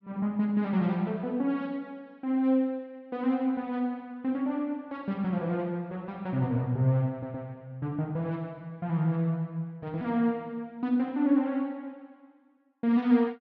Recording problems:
audio stuttering; at 7 s

